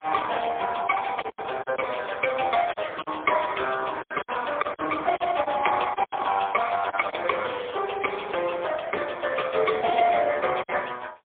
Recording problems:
telephone audio; 370 Hz to 3.4 kHz, AMR-NB, then MP3
lost packets; 6% of the sound replaced, filled with silence

